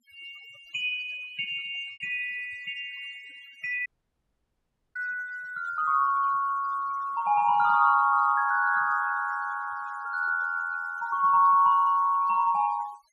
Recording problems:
noise reduction artefacts; signal-to-artefact ratio 24 dB
lost packets; 0.6% of the sound replaced, filled with repeated pitch periods
dropout; at 4 s for 1 s

